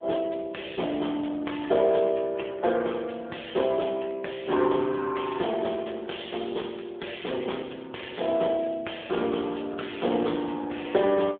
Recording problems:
telephone audio; 220 Hz to 3.5 kHz, AMR-NB

